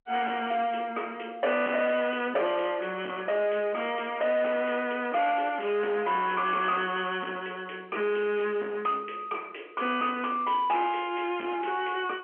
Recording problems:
telephone audio; 220 Hz to 3.3 kHz, G.711
distorted audio; soft clipping, signal-to-distortion ratio 10 dB

